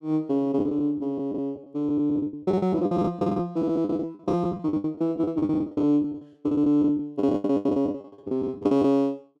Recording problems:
lost packets; 23% of the sound replaced, filled with the last packet

